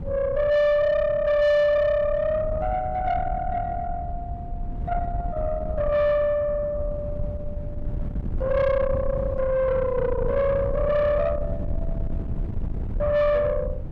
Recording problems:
distorted audio; soft clipping, signal-to-distortion ratio 11 dB
wind noise; below 140 Hz, SNR 9 dB

